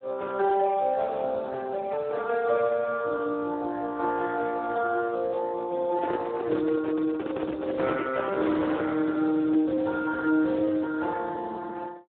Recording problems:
phone line; 260 Hz to 2.4 kHz, Speex
microphone handling noise; from 6 to 9 s; peak 0 dB vs average level

